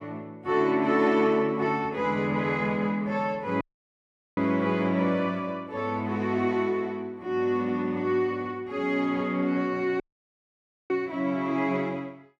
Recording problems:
dropout; at 3.5 s for 1 s and at 10 s for 1 s

